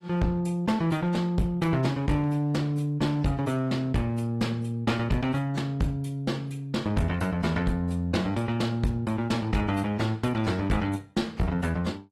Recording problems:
codec artefacts; AAC, log-spectral distance 2 dB
distorted audio; hard clipping, uneven, signal-to-distortion ratio 10 dB

